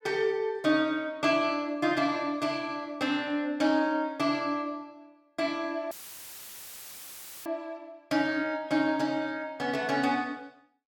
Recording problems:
audio cutting out; at 6 s for 1.5 s; filled with static

